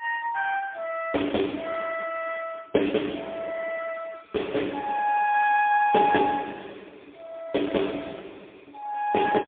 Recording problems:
phone line; 220 Hz to 3.4 kHz, AMR-NB, then MP3

